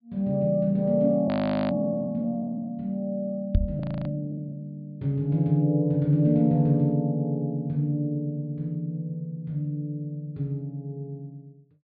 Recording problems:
low-pass filter; nothing above 4.8 kHz
audio freezing; at 1.5 s and at 4 s
microphone bump; at 3.5 s; peak +7 dB vs average level

